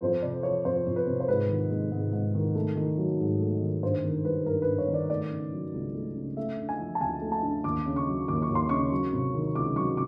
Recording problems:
none

